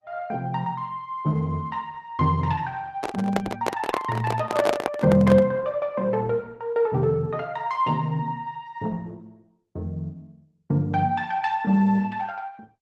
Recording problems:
lossy compression; Opus, log-spectral distance 2 dB
handling noise; from 3 to 5.5 s; peak +5 dB vs average level

